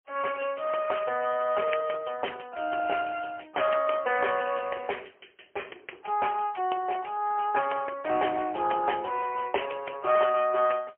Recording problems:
telephone audio; 320 Hz to 3.1 kHz, AMR-NB, then MP3

